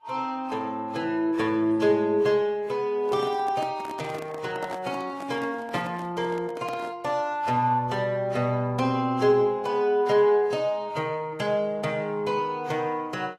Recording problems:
codec artefacts; AAC, then Vorbis, log-spectral distance 2 dB, nothing above 12.7 kHz
microphone handling noise; from 3 to 7 s; peak -5 dB vs average level

